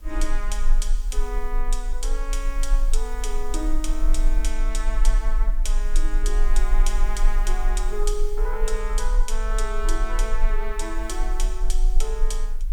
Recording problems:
hiss; slope -3 dB per octave, SNR 20 dB
low-frequency rumble; below 34 Hz, strongest tone 20 Hz, SNR -6 dB

